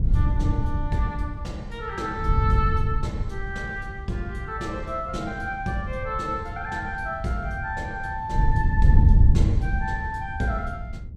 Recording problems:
wind on the microphone; below 98 Hz, SNR -5 dB

